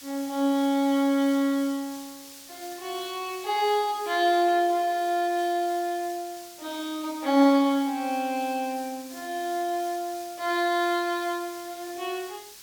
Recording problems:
hiss; SNR 17 dB

